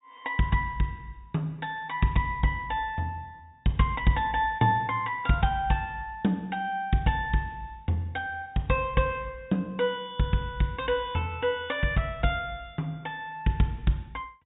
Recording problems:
treble cut off; nothing above 4 kHz

